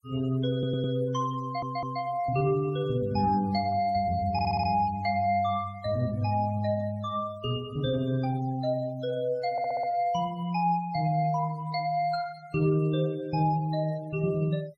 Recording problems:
denoising artefacts; signal-to-artefact ratio 23 dB
stutter; 4 times, first at 0.5 s

